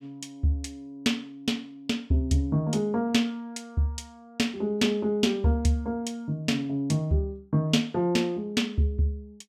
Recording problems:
none

